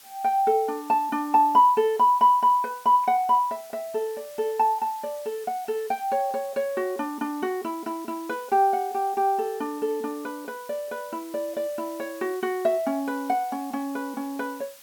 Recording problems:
background hiss; slope +2 dB per octave, SNR 22 dB

